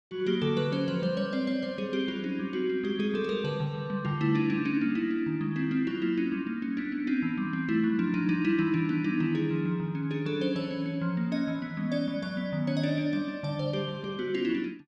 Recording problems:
none

